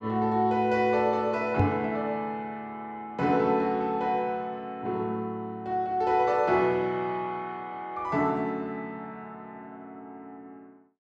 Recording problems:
microphone bump; at 1.5 s; peak +5 dB vs average level

